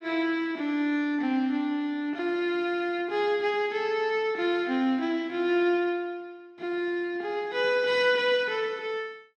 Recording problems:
none

